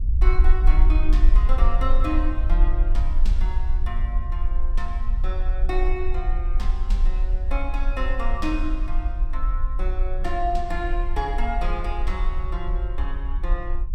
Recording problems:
rumble; below 44 Hz, strongest tone 20 Hz, SNR -6 dB

